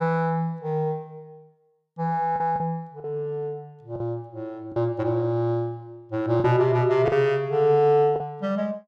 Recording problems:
lost packets; 4% of the sound replaced, filled with the last packet

